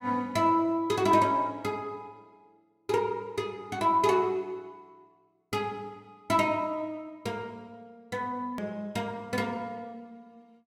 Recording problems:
edit click; at 8.5 s

